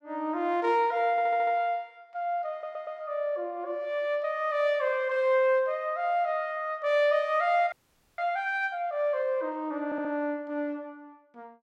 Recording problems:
audio stuttering; at 1 s, at 2.5 s and at 10 s
frozen audio; at 7.5 s

